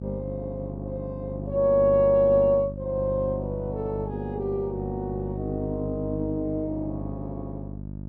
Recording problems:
hum; 50 Hz, harmonics up to 650 Hz, SNR 8 dB

